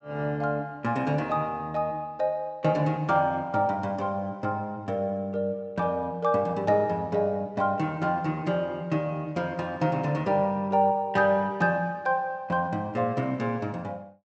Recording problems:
low-pass filter; nothing above 7.9 kHz

